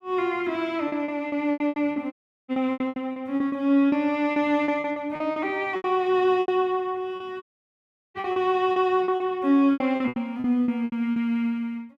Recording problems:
packet loss; 17% of the sound replaced, filled with repeated pitch periods
dropout; at 2 s and at 7.5 s for 0.5 s

